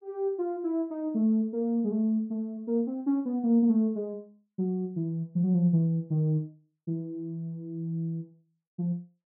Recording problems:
none

